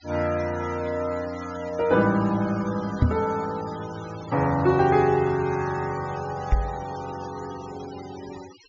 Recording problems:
treble missing; nothing above 7.1 kHz
denoising artefacts; signal-to-artefact ratio 19 dB
microphone thump; at 3 s and at 6.5 s; peak +8 dB vs average level

